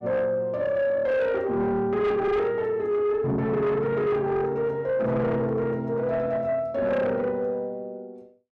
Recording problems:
distorted audio; soft clipping, signal-to-distortion ratio 10 dB

